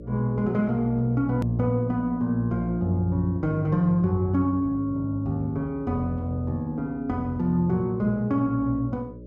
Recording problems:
hum; 60 Hz, harmonics up to 600 Hz, SNR 19 dB
hard cut with a click; at 1.5 s

